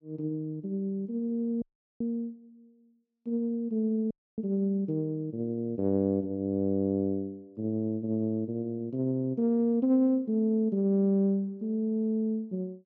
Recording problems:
audio cutting out; at 1.5 s and at 4 s

